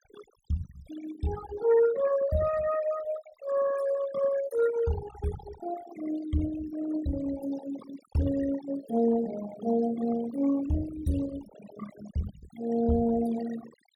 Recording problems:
noise reduction artefacts; signal-to-artefact ratio 13 dB

